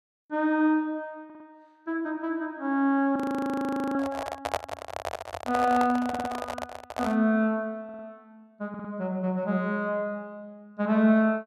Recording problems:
audio stuttering; 4 times, first at 1.5 s
microphone handling noise; from 3 to 7 s; peak +3 dB vs average level
audio freezing; at 3 s for 1 s

